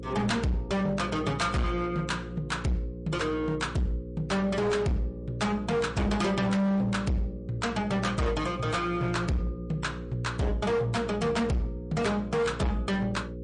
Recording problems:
codec artefacts; MP3, log-spectral distance 2 dB, nothing above 9 kHz
distorted audio; hard clipping, signal-to-distortion ratio 8 dB
hum; 60 Hz, harmonics up to 540 Hz, SNR 11 dB

